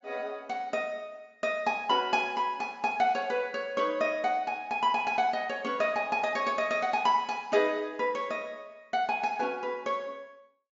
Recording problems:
low-pass filter; nothing above 8 kHz

